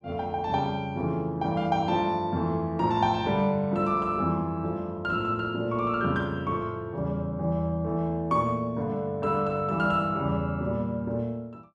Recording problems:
none

